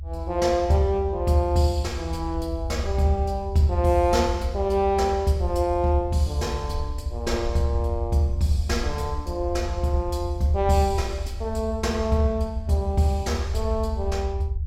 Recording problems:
low-frequency rumble; below 78 Hz, SNR 6 dB

